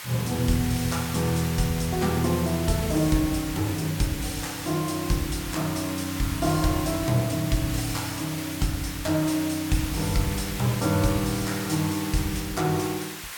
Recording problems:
background hiss; SNR 8 dB

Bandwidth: 17.5 kHz